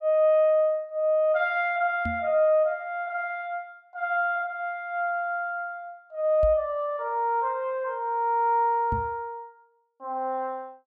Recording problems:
knock on the microphone; at 2 s, at 6.5 s and at 9 s; peak -2 dB vs average level

